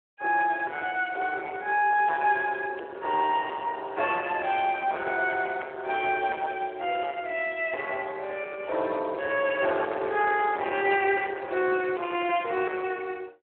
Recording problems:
telephone audio; 320 Hz to 3.3 kHz, Speex
distortion; soft clipping, signal-to-distortion ratio 13 dB

